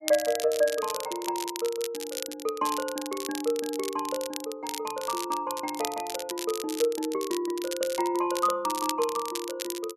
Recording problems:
crackle; vinyl, SNR 7 dB

